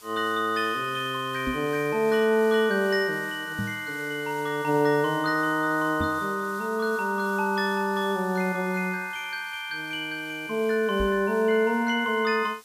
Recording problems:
background hiss; slope +1 dB per octave, SNR 22 dB
microphone thump; 4 times, first at 1.5 s; peak -2 dB vs average level

